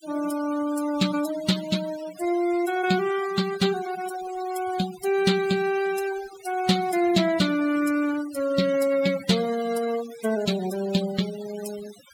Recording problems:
denoising artefacts; signal-to-artefact ratio 14 dB

